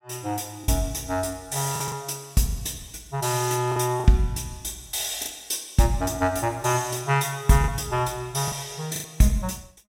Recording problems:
lost packets; 5% of the sound replaced, filled with the last packet

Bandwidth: 16 kHz